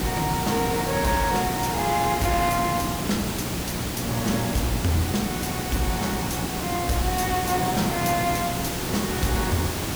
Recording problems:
distortion; hard clipping, signal-to-distortion ratio 11 dB
hum; 60 Hz, harmonics up to 1.1 kHz, SNR 10 dB
hiss; slope -4 dB per octave, SNR 2 dB

